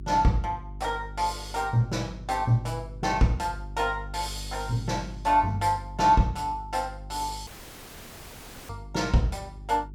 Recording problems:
mains hum; 50 Hz, harmonics up to 400 Hz, SNR 14 dB
audio cutting out; at 7.5 s for 1 s

